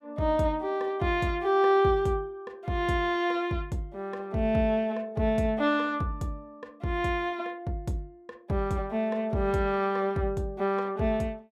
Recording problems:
none

